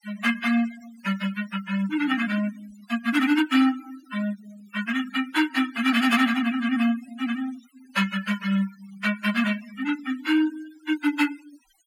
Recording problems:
denoising artefacts; signal-to-artefact ratio 15 dB

